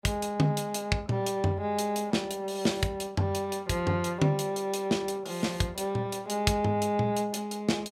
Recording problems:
none

